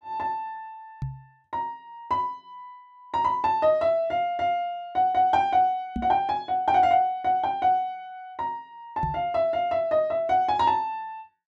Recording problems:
microphone bump; at 1 s, at 6 s and at 9 s; peak -2 dB vs average level

